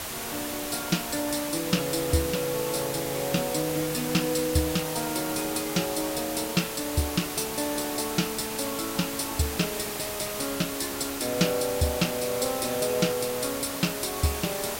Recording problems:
hiss; slope -2 dB per octave, SNR 4 dB

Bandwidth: 16 kHz